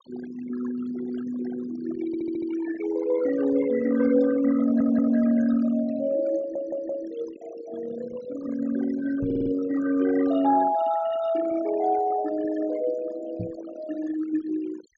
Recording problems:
treble missing; nothing above 7.5 kHz
noise reduction artefacts; signal-to-artefact ratio 13 dB
audio stuttering; 4 times, first at 2 s
microphone thump; at 9 s and at 13 s; peak -4 dB vs average level

